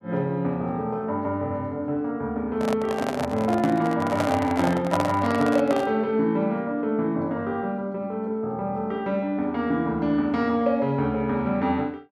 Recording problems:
handling noise; from 2.5 to 6 s; peak +3 dB vs average level

